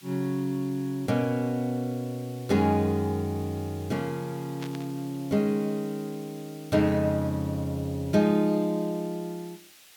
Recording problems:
hiss; slope +2 dB per octave, SNR 22 dB
static burst; at 4.5 s; peak -9 dB vs average level

